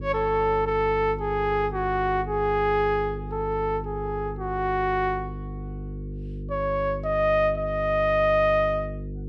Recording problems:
hum; 50 Hz, harmonics up to 500 Hz, SNR 10 dB

